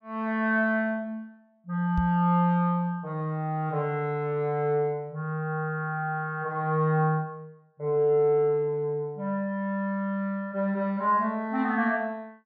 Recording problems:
knock on the microphone; at 2 s; peak +1 dB vs average level

